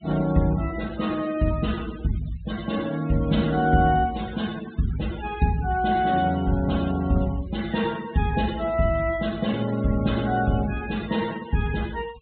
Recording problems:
treble cut off; nothing above 4 kHz
denoising artefacts; signal-to-artefact ratio 17 dB

